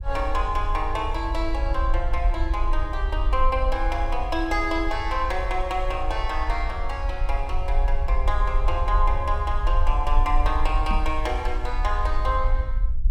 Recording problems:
rumble; below 50 Hz, SNR 0 dB
microphone bump; at 11 s; peak -1 dB vs average level

